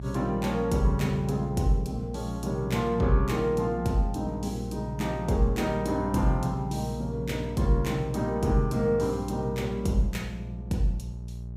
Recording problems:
mains hum; 60 Hz, harmonics up to 420 Hz, SNR 10 dB

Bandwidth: 15.5 kHz